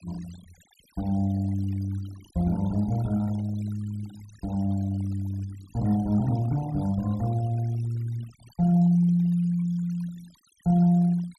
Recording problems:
noise reduction artefacts; signal-to-artefact ratio 23 dB

